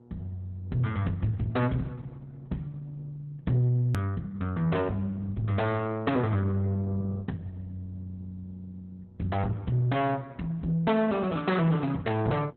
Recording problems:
lossy codec; Opus, log-spectral distance 2 dB, nothing above 13.1 kHz
distortion; soft clipping, signal-to-distortion ratio 11 dB
electrical hum; 60 Hz, harmonics up to 960 Hz, SNR 26 dB
hard cut with a click; at 4 s

